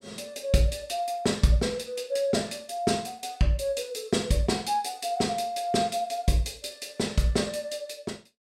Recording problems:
none

